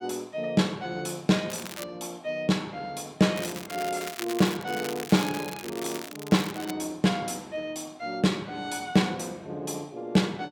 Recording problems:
crackling; at 1.5 s and from 3.5 to 6.5 s; loose cable, SNR 11 dB

